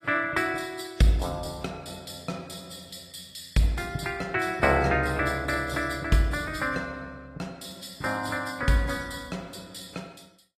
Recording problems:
lossy codec; AAC, log-spectral distance 4 dB, nothing above 15.1 kHz

